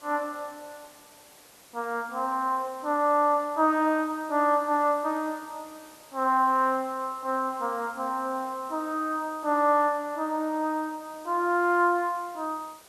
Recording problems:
background hiss; slope -2 dB per octave, SNR 24 dB

